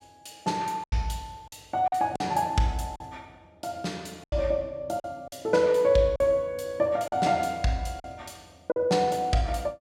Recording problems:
lost packets; 6% of the sound replaced, filled with silence

